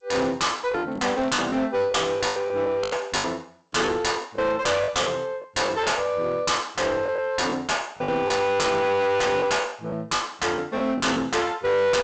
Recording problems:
codec artefacts; G.722, log-spectral distance 4 dB, nothing above 7.8 kHz
distortion; hard clipping, uneven, signal-to-distortion ratio 6 dB
lost packets; 9% of the sound replaced, filled with the last packet
crackle; at 1 s; loose cable, SNR 28 dB

